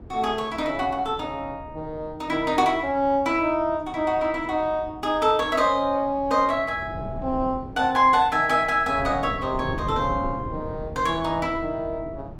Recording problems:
wind on the microphone; below 310 Hz, SNR 15 dB

